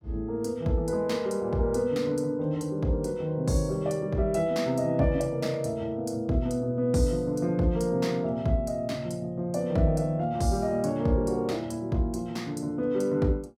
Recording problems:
none

